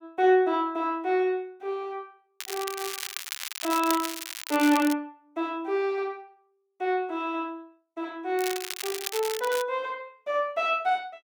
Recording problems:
crackling; from 2.5 to 5 s and from 8.5 to 9.5 s; loose cable, SNR 6 dB

